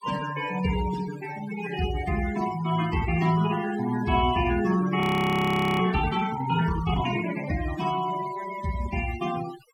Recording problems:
noise reduction artefacts; signal-to-artefact ratio 12 dB
audio freezing; at 5 s for 1 s

